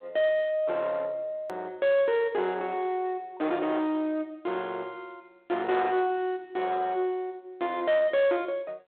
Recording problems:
telephone audio; 320 Hz to 3.7 kHz, G.726
distorted audio; soft clipping, signal-to-distortion ratio 10 dB
edit click; at 1.5 s

